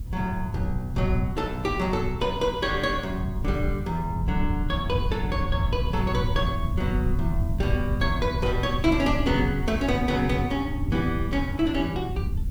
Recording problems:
hiss; slope 0 dB per octave, SNR 28 dB
wind noise; below 110 Hz, SNR 3 dB

